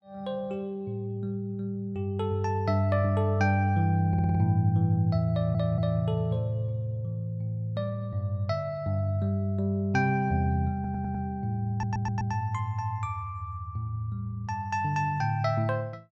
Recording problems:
stutter; 4 times, first at 4 s

